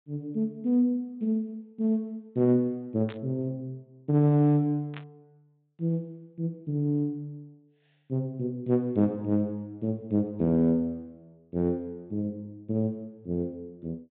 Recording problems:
low-pass filter; nothing above 4 kHz
burst of static; at 3 s and at 5 s; peak -10 dB vs average level

